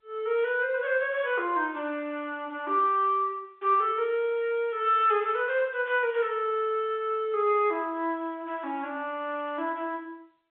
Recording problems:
telephone audio; 300 Hz to 3.9 kHz, G.711

